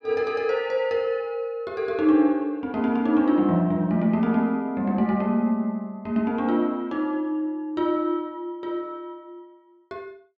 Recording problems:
none

